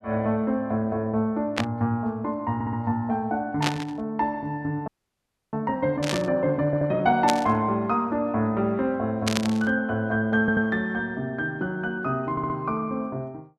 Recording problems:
burst of static; 5 times, first at 1.5 s; peak +4 dB vs average level
audio stuttering; 4 times, first at 2.5 s
frozen audio; at 5 s for 0.5 s

